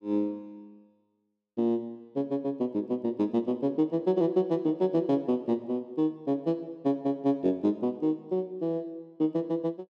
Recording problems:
none

